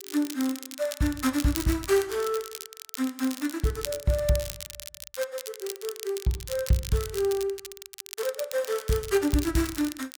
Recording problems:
crackle; vinyl, SNR 10 dB

